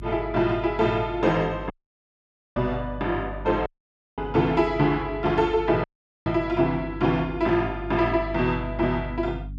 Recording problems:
mains hum; 50 Hz, harmonics up to 300 Hz, SNR 13 dB
dropout; at 1.5 s for 1 s, at 3.5 s for 0.5 s and at 6 s

